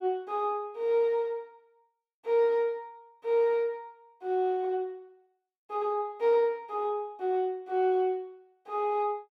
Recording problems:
none

